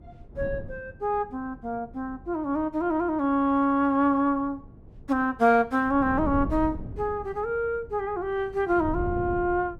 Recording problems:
wind on the microphone; below 200 Hz, SNR 14 dB

